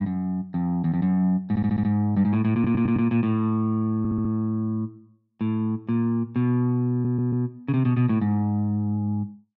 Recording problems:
stutter; 4 times, first at 1.5 s

